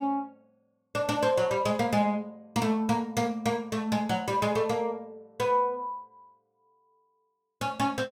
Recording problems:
none

